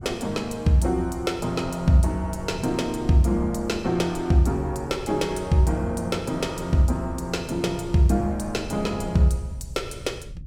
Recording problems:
low-frequency rumble; below 130 Hz, SNR 16 dB

